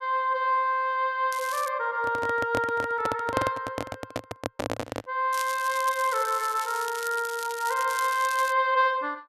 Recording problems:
crackling; at 1.5 s and from 5.5 to 8.5 s; loose cable, SNR 13 dB
microphone handling noise; from 2 to 5 s; peak +3 dB vs average level

